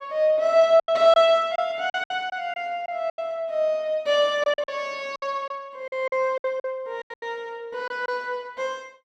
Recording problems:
packet loss; 10% of the sound replaced, filled with silence

